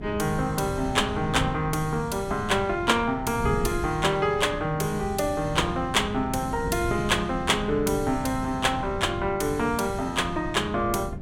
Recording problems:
wind on the microphone; below 210 Hz, SNR 10 dB

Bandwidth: 16.5 kHz